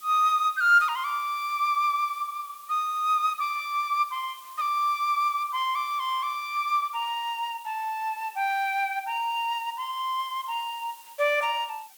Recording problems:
background hiss; slope +2 dB per octave, SNR 22 dB

